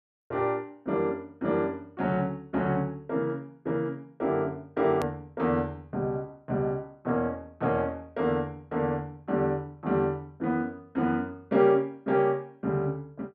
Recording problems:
edit click; at 5 s

